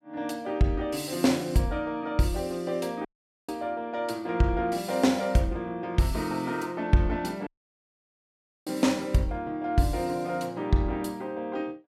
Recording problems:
dropout; at 3 s and at 7.5 s for 1 s

